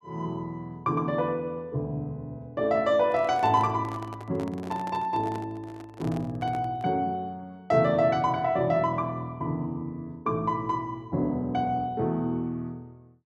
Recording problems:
handling noise; from 3 to 7 s; peak -8 dB vs average level

